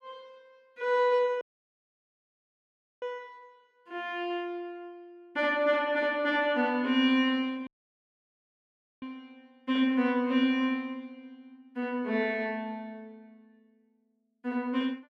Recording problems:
dropout; at 1.5 s for 1.5 s and at 7.5 s for 1.5 s

